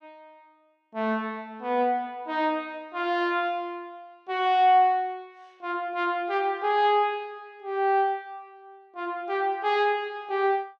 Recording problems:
none

